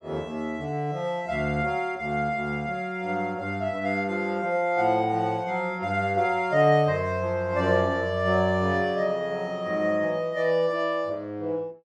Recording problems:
none

